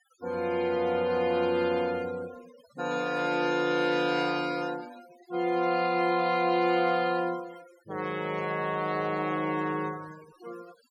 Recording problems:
noise reduction artefacts; signal-to-artefact ratio 20 dB

